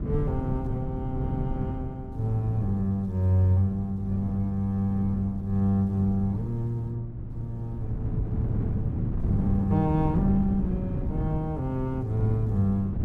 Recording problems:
wind noise; below 180 Hz, SNR 5 dB

